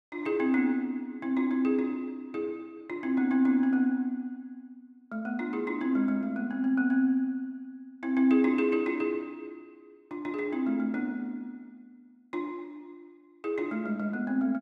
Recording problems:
none

